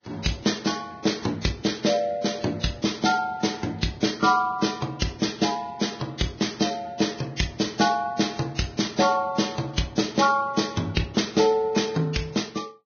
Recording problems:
lossy compression; Vorbis, log-spectral distance 5 dB, nothing above 6.3 kHz

